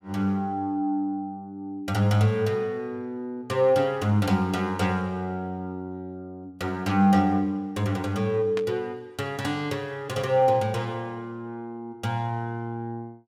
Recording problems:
static burst; at 8.5 s; peak -5 dB vs average level

